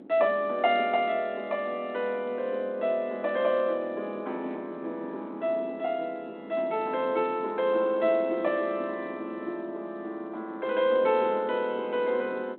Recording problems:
phone line; 240 Hz to 3.5 kHz, G.726
wind on the microphone; below 400 Hz, SNR 18 dB

